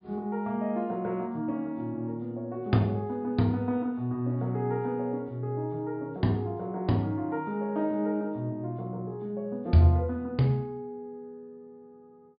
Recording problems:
treble cut off; nothing above 4.9 kHz

